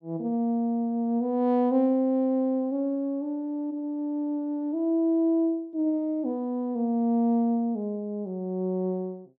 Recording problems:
none

